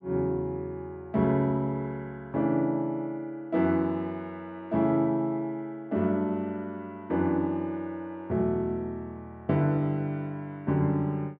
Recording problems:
none

